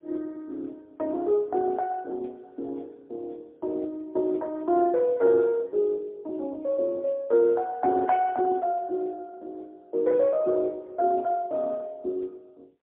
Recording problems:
telephone audio; 300 Hz to 3 kHz, AMR-NB, then MP3

